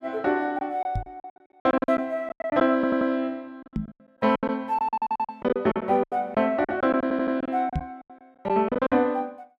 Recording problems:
packet loss; 17% of the sound replaced, filled with silence
microphone thump; at 1 s, at 4 s and at 8 s; peak +1 dB vs average level
audio stuttering; at 3 s, at 5 s and at 7 s

